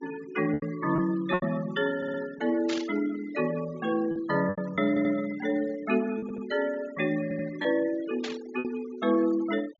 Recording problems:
treble missing; nothing above 7.3 kHz
denoising artefacts; signal-to-artefact ratio 18 dB
packet loss; 5% of the sound replaced, filled with repeated pitch periods
audio stuttering; 4 times, first at 2 s
static burst; at 2.5 s and at 8 s; peak -3 dB vs average level

